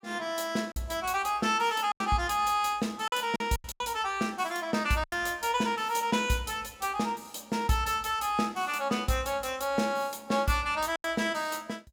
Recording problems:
packet loss; 4% of the sound replaced, filled with silence

